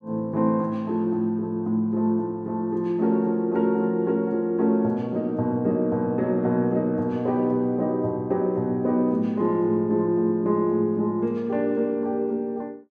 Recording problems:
none

